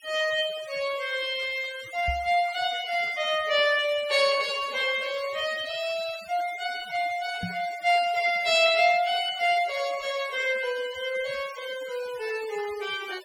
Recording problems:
denoising artefacts; signal-to-artefact ratio 17 dB
knock on the microphone; at 2 s and at 7.5 s; peak -2 dB vs average level

